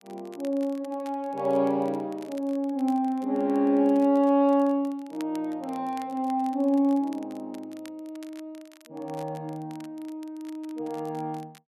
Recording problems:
crackle; vinyl, SNR 27 dB

